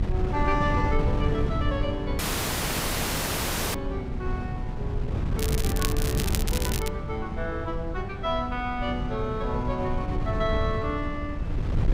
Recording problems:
wind on the microphone; below 140 Hz, SNR -1 dB
audio cutting out; at 2 s for 1.5 s
crackling; from 5.5 to 7 s; loose cable, SNR 2 dB

